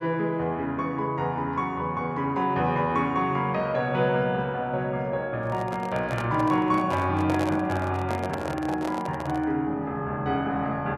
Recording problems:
microphone handling noise; from 5.5 to 9.5 s; peak -1 dB vs average level

